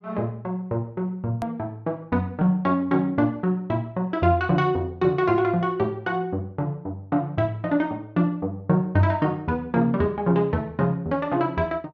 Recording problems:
treble cut off; nothing above 6.9 kHz
hard cut with a click; at 1.5 s

